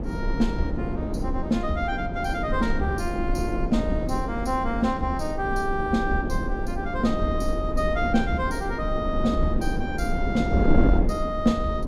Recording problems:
wind on the microphone; below 250 Hz, SNR 1 dB

